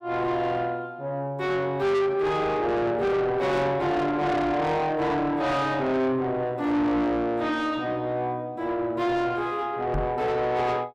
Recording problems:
distortion; soft clipping, signal-to-distortion ratio 7 dB
microphone bump; at 10 s; peak +1 dB vs average level

